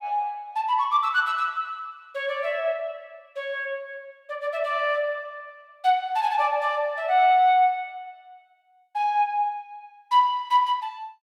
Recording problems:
none

